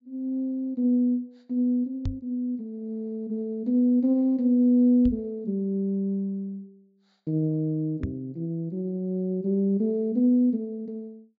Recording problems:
low-pass filter; nothing above 7.3 kHz
knock on the microphone; at 2 s, at 5 s and at 8 s; peak -1 dB vs average level

